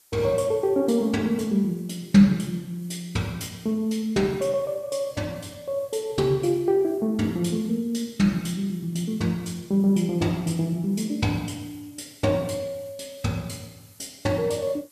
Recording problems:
hiss; SNR 28 dB

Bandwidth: 14.5 kHz